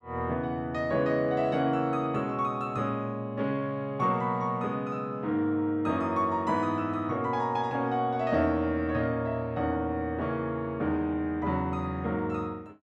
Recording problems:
none

